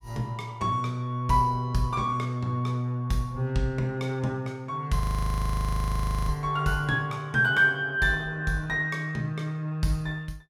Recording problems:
audio freezing; at 5 s for 1.5 s

